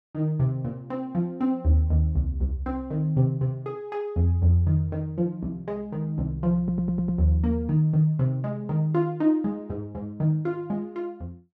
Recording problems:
stutter; at 6.5 s

